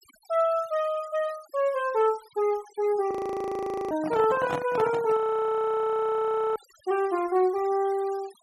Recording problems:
noise reduction artefacts; signal-to-artefact ratio 22 dB
frozen audio; at 3 s for 1 s and at 5 s for 1.5 s
handling noise; from 4 to 5 s; peak -1 dB vs average level

